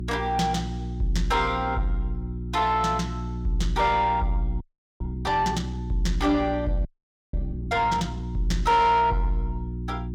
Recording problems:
distortion; soft clipping, signal-to-distortion ratio 12 dB
hum; 60 Hz, harmonics up to 360 Hz, SNR 8 dB
audio freezing; at 4.5 s and at 7 s

